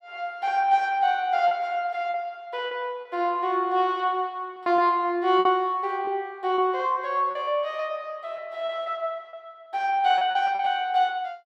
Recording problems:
packet loss; 6% of the sound replaced, filled with repeated pitch periods

